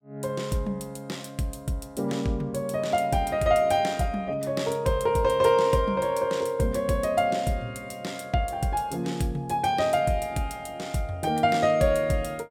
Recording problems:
none

